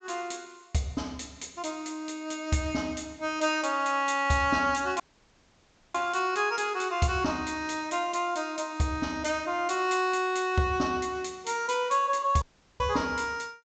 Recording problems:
treble cut off; nothing above 8 kHz
dropout; at 5 s for 1 s and at 12 s

